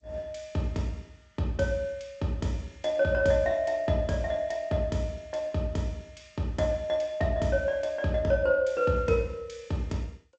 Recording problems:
codec artefacts; G.722, log-spectral distance 2 dB, nothing above 7.3 kHz

